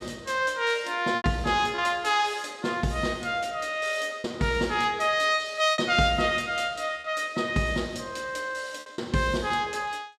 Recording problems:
lost packets; 4% of the sound replaced, filled with repeated pitch periods

